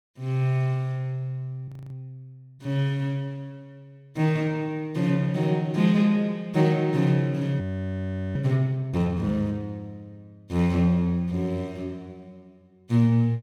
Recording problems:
audio freezing; at 1.5 s and at 7.5 s for 1 s

